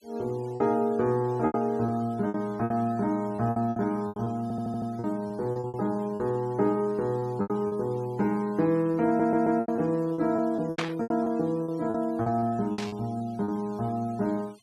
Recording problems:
denoising artefacts; signal-to-artefact ratio 26 dB
lost packets; 12% of the sound replaced, filled with repeated pitch periods
audio stuttering; at 4.5 s and at 9 s
burst of static; at 11 s and at 13 s; peak +1 dB vs average level

